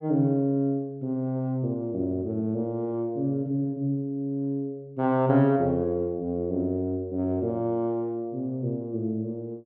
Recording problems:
none

